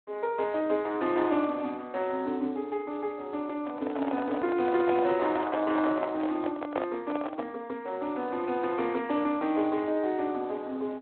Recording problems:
phone line; 240 Hz to 3.6 kHz, Speex
handling noise; from 3.5 to 7.5 s; peak +2 dB vs average level

